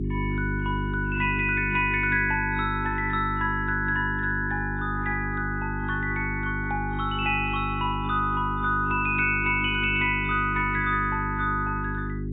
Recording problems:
codec artefacts; AAC, log-spectral distance 2 dB
hum; 50 Hz, harmonics up to 400 Hz, SNR 5 dB

